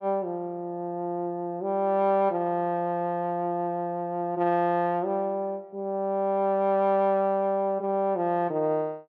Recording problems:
none

